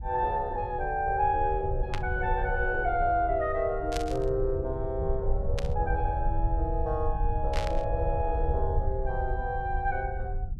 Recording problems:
rumble; below 74 Hz, SNR 4 dB
burst of static; 4 times, first at 2 s; peak -2 dB vs average level

